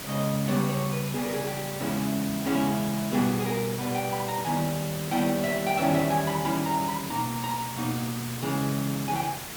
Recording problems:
hiss; slope -2 dB per octave, SNR 8 dB

